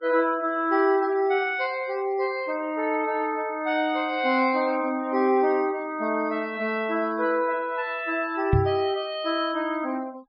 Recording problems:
treble cut off; nothing above 5.5 kHz
noise reduction artefacts; signal-to-artefact ratio 25 dB
knock on the microphone; at 8.5 s; peak +6 dB vs average level

